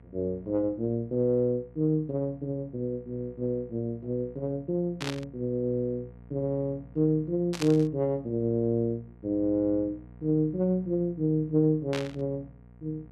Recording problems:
hum; 60 Hz, harmonics up to 960 Hz, SNR 22 dB
burst of static; at 5 s, at 7.5 s and at 12 s; peak -1 dB vs average level

